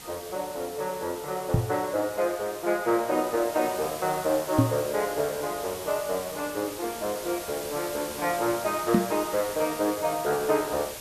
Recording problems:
background hiss; slope -1 dB per octave, SNR 10 dB
microphone thump; at 1.5 s, at 4.5 s and at 9 s; peak +10 dB vs average level

